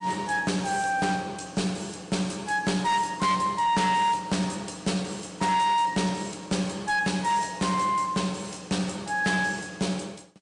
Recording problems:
lossy compression; MP3, log-spectral distance 6 dB, nothing above 8.2 kHz
distortion; hard clipping, signal-to-distortion ratio 11 dB

